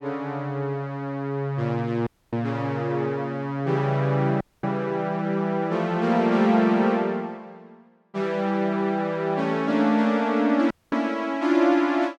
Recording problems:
audio cutting out; at 2 s, at 4.5 s and at 11 s

